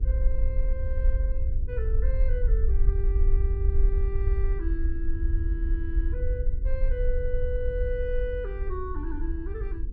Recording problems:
hum; 50 Hz, harmonics up to 450 Hz, SNR 12 dB
rumble; below 56 Hz, SNR -8 dB

